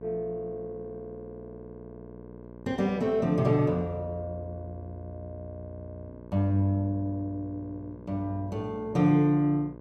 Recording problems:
hum; 60 Hz, harmonics up to 1.2 kHz, SNR 17 dB

